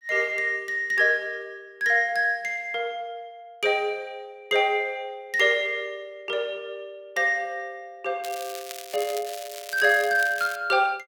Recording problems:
crackling; from 8 to 11 s; loose cable, SNR 14 dB

